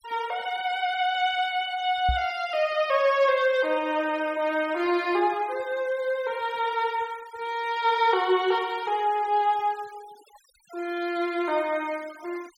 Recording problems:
denoising artefacts; signal-to-artefact ratio 22 dB
knock on the microphone; at 2 s; peak +1 dB vs average level

